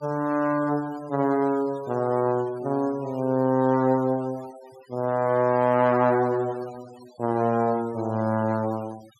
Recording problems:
denoising artefacts; signal-to-artefact ratio 24 dB

